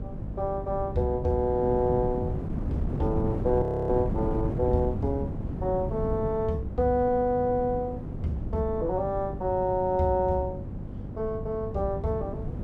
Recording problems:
hum; 50 Hz, harmonics up to 800 Hz, SNR 13 dB
wind on the microphone; below 230 Hz, SNR 6 dB
audio freezing; at 3.5 s

